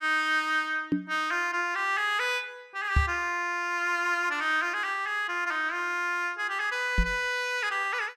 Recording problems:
microphone thump; at 1 s, at 3 s and at 7 s; peak +6 dB vs average level

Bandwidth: 14.5 kHz